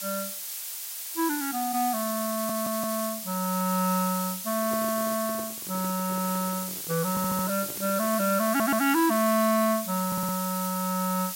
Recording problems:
background hiss; slope +4 dB per octave, SNR 5 dB
audio stuttering; 4 times, first at 2.5 s
handling noise; from 4.5 to 8.5 s; peak -9 dB vs average level

